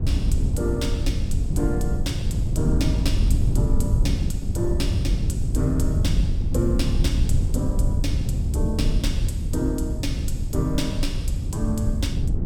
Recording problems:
wind noise; below 110 Hz, SNR -5 dB

